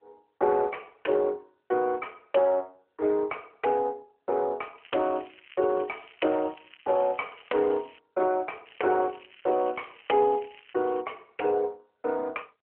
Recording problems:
telephone audio; 320 Hz to 3.2 kHz, AMR-NB
crackling; from 5 to 8 s and from 8.5 to 11 s; loose cable, SNR 23 dB

